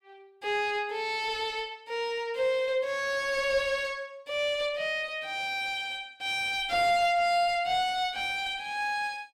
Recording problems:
distortion; soft clipping, signal-to-distortion ratio 10 dB

